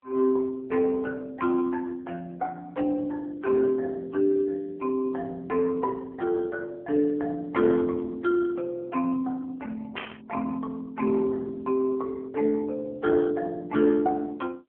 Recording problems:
phone line; 240 Hz to 2.5 kHz, AMR-NB
static burst; at 10 s; peak -3 dB vs average level

